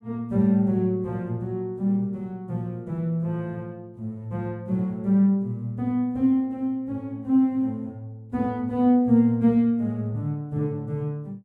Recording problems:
none

